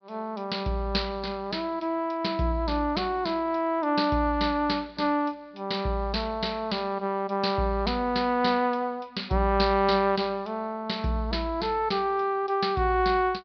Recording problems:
low-pass filter; nothing above 5.5 kHz

